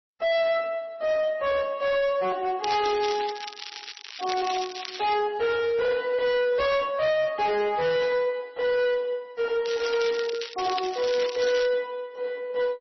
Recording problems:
lossy codec; MP3, then MP3, log-spectral distance 6 dB, nothing above 5.7 kHz
distortion; hard clipping, uneven, signal-to-distortion ratio 8 dB
crackling; from 2.5 to 5 s and from 9.5 to 12 s; loose cable, SNR 11 dB

